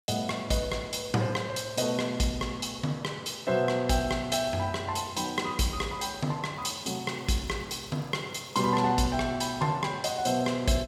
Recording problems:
crackle; from 6.5 to 8.5 s; loose cable, SNR 30 dB

